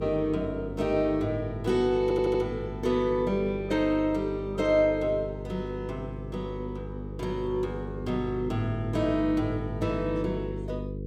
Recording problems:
electrical hum; 50 Hz, harmonics up to 500 Hz, SNR 9 dB
audio stuttering; at 2 s

